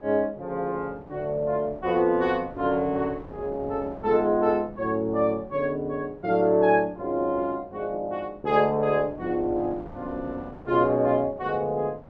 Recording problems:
wind noise; below 590 Hz, SNR 20 dB

